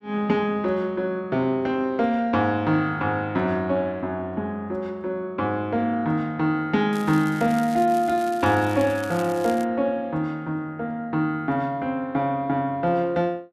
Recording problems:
crackling; from 7 to 9.5 s; loose cable, SNR 19 dB

